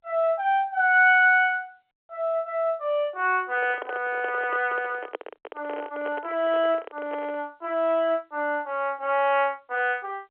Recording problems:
phone line; 300 Hz to 3.3 kHz, G.711
microphone handling noise; from 3.5 to 7.5 s; peak -5 dB vs average level

